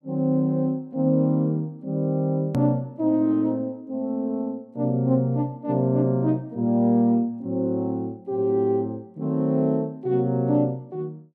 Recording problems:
edit click; at 2.5 s

